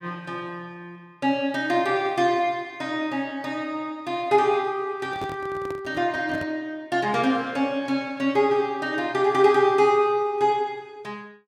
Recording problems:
handling noise; from 5 to 6.5 s; peak -8 dB vs average level

